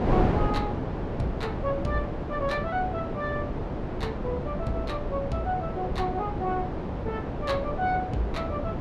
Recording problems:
wind on the microphone; below 510 Hz, SNR 0 dB

